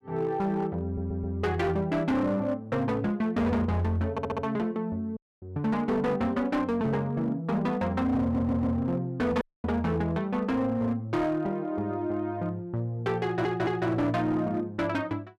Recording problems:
distorted audio; hard clipping, signal-to-distortion ratio 11 dB
stutter; 4 times, first at 1 s
dropout; at 5 s and at 9.5 s

